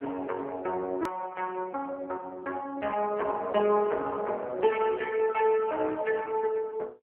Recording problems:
telephone audio; 280 Hz to 2.6 kHz, AMR-NB
hard cut with a click; at 1 s

